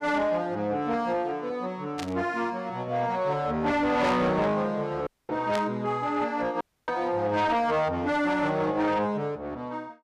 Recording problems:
distortion; soft clipping, signal-to-distortion ratio 10 dB
static burst; at 2 s and at 5.5 s; peak -4 dB vs average level
audio cutting out; at 5 s and at 6.5 s

